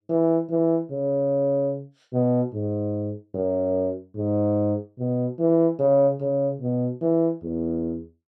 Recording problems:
none

